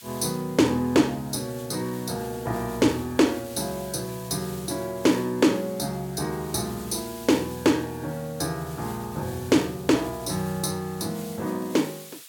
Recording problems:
background hiss; slope +4 dB per octave, SNR 17 dB

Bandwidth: 17 kHz